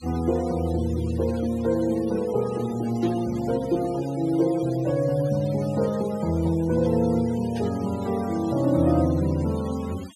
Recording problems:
denoising artefacts; signal-to-artefact ratio 20 dB
static burst; at 3 s and at 7.5 s; peak -17 dB vs average level

